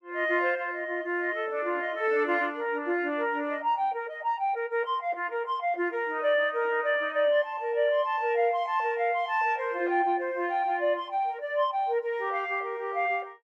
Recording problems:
none

